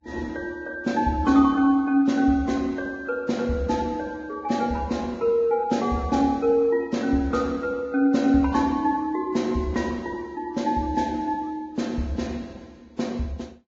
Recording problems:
lossy compression; Vorbis, log-spectral distance 2 dB

